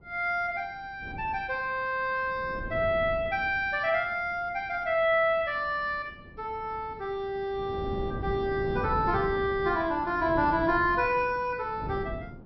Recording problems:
low-pass filter; nothing above 5.6 kHz
wind on the microphone; below 300 Hz, SNR 11 dB

